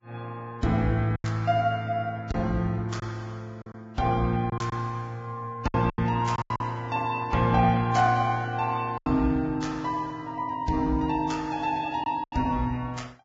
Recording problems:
codec artefacts; Vorbis, log-spectral distance 2 dB, nothing above 7.3 kHz
lost packets; 5% of the sound replaced, filled with silence

